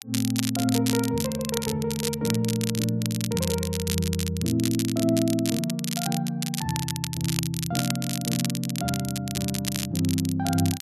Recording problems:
crackle; vinyl, SNR 5 dB

